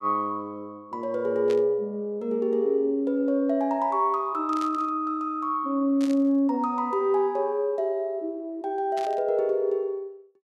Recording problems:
burst of static; 4 times, first at 1.5 s; peak -11 dB vs average level

